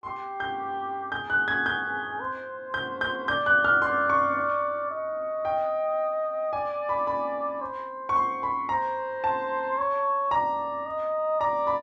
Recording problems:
none

